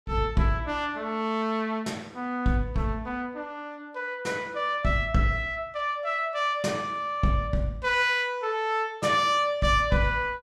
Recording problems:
none

